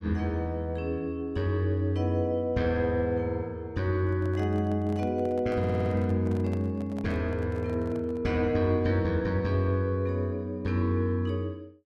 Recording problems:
microphone handling noise; from 4 to 8.5 s; peak -11 dB vs average level
stutter; at 5.5 s

